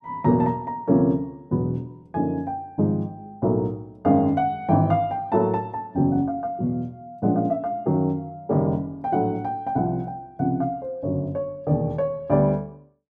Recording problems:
none

